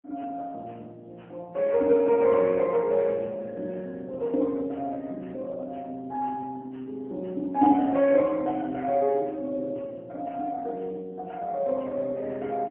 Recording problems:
phone line; 220 Hz to 2.8 kHz, AMR-NB, then MP3

